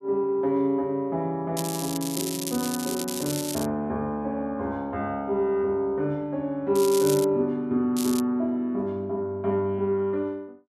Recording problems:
crackling; from 1.5 to 3.5 s, at 6.5 s and at 8 s; loose cable, SNR 7 dB

